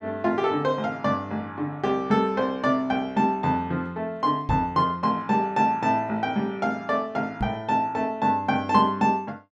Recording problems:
microphone thump; at 4.5 s and at 7.5 s; peak 0 dB vs average level

